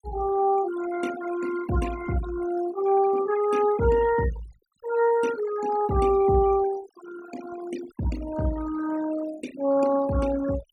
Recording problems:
denoising artefacts; signal-to-artefact ratio 15 dB

